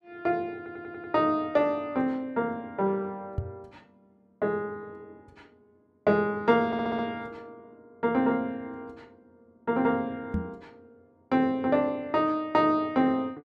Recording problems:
audio stuttering; at 0.5 s and at 6.5 s
microphone thump; at 3.5 s and at 10 s; peak +1 dB vs average level

